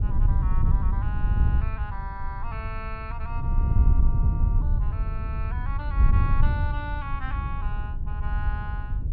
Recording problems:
low-pass filter; nothing above 5.5 kHz
wind noise; below 82 Hz, SNR -11 dB

